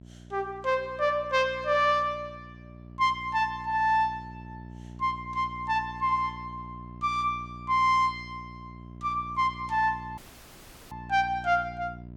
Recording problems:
hum; 60 Hz, harmonics up to 720 Hz, SNR 17 dB
dropout; at 10 s for 0.5 s

